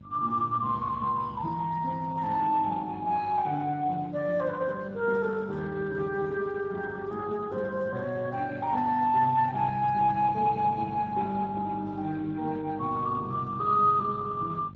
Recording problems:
lossy codec; Speex, log-spectral distance 3 dB
hum; 50 Hz, harmonics up to 350 Hz, SNR 18 dB

